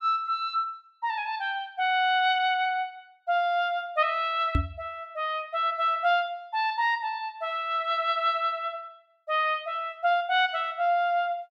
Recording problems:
knock on the microphone; at 4.5 s; peak +5 dB vs average level

